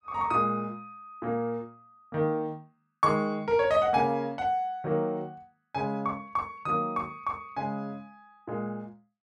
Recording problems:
none

